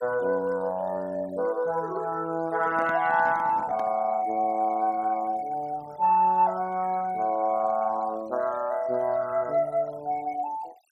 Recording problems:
noise reduction artefacts; signal-to-artefact ratio 24 dB
handling noise; from 2.5 to 4 s; peak -9 dB vs average level

